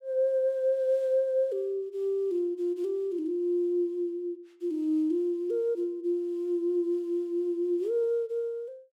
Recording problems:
none

